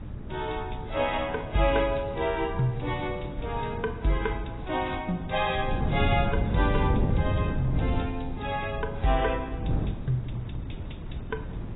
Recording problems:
lossy codec; AAC, log-spectral distance 4 dB, nothing above 3.8 kHz
hiss; SNR 24 dB
wind noise; below 190 Hz, SNR 3 dB

